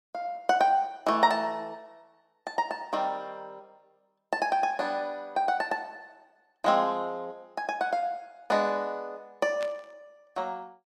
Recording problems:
burst of static; at 9.5 s; peak -8 dB vs average level

